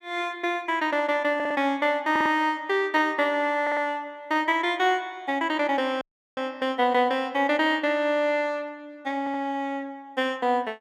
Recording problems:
stutter; 4 times, first at 1.5 s
dropout; at 6 s

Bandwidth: 15.5 kHz